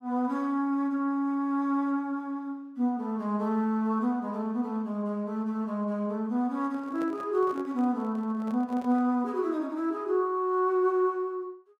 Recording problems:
microphone handling noise; from 6.5 to 9 s; peak -10 dB vs average level

